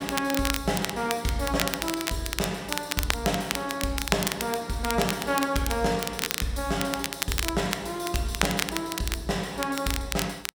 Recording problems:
crackle; vinyl, SNR 3 dB

